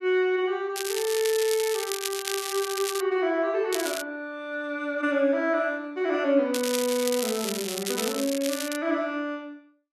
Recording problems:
crackle; from 1 to 3 s, at 3.5 s and from 6.5 to 9 s; loose cable, SNR 5 dB

